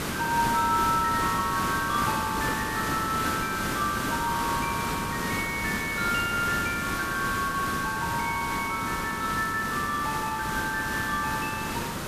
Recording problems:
hiss; SNR 3 dB

